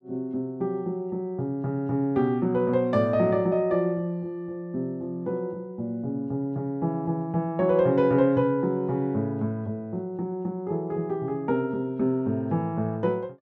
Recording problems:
none

